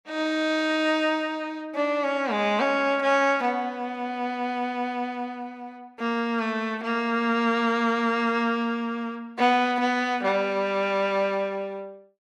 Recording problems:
none

